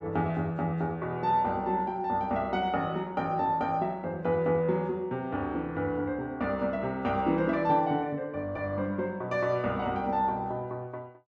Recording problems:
none

